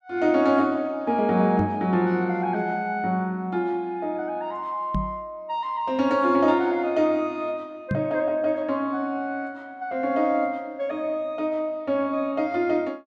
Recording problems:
microphone thump; at 1.5 s, at 5 s and at 8 s; peak +2 dB vs average level

